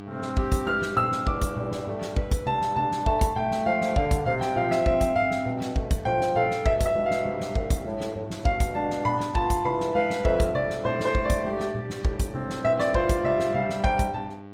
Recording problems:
lossy codec; Opus, log-spectral distance 3 dB, nothing above 19 kHz
hum; 50 Hz, harmonics up to 1.9 kHz, SNR 16 dB

